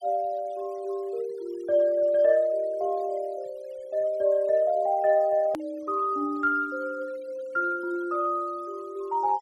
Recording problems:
denoising artefacts; signal-to-artefact ratio 28 dB
click at an edit; at 5.5 s

